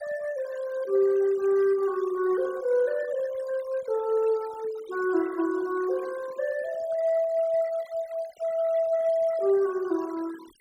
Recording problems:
denoising artefacts; signal-to-artefact ratio 20 dB

